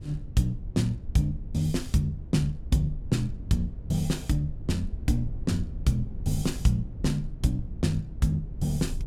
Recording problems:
low-frequency rumble; below 86 Hz, SNR 10 dB

